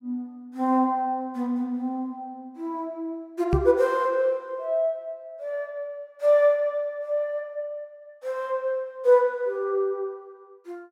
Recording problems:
microphone bump; at 3.5 s; peak +5 dB vs average level

